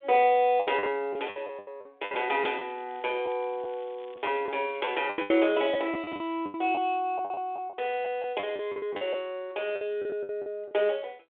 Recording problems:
phone line; 300 Hz to 3.6 kHz, G.726
lost packets; 13% of the sound replaced, filled with the last packet
crackling; from 2.5 to 5 s; loose cable, SNR 27 dB

